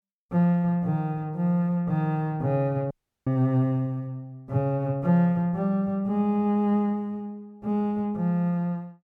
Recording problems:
dropout; at 3 s

